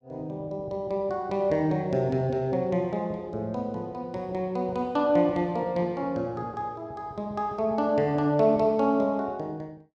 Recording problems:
none

